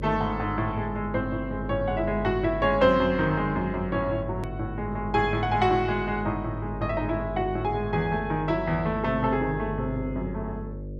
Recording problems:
electrical hum; 50 Hz, harmonics up to 600 Hz, SNR 9 dB
click at an edit; at 4.5 s

